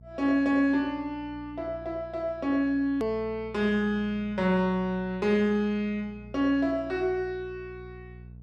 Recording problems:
hum; 60 Hz, harmonics up to 480 Hz, SNR 20 dB
click at an edit; at 3 s

